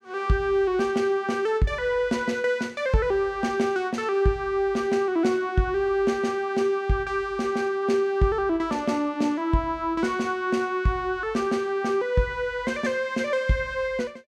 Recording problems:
none

